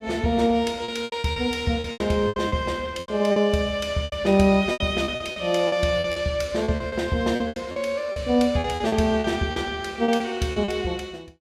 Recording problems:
lost packets; 15% of the sound replaced, filled with repeated pitch periods

